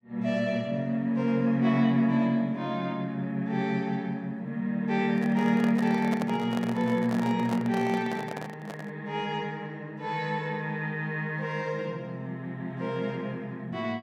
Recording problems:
handling noise; from 5 to 9 s; peak -2 dB vs average level

